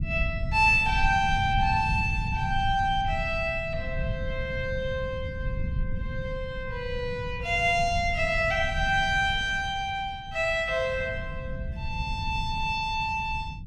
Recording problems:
rumble; below 130 Hz, SNR 8 dB

